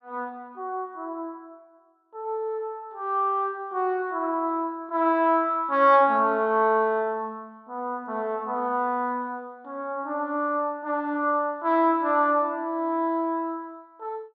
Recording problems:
none

